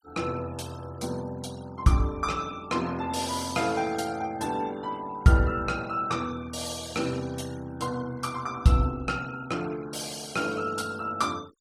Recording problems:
noise reduction artefacts; signal-to-artefact ratio 20 dB

